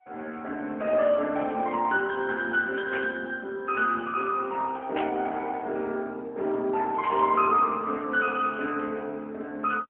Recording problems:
phone line; 240 Hz to 3 kHz, AMR-NB, then MP3
burst of static; at 3 s, at 5 s and at 7 s; peak -4 dB vs average level

